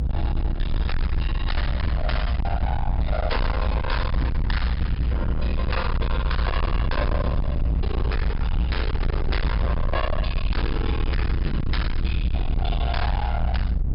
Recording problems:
low-pass filter; nothing above 5.5 kHz
distortion; hard clipping, signal-to-distortion ratio 6 dB
hum; 60 Hz, harmonics up to 960 Hz, SNR 10 dB
low-frequency rumble; below 84 Hz, SNR -3 dB

